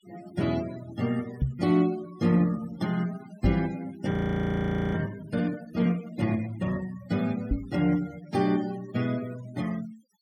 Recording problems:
denoising artefacts; signal-to-artefact ratio 19 dB
microphone bump; at 1.5 s, at 3.5 s and at 7.5 s; peak +6 dB vs average level
frozen audio; at 4 s for 1 s

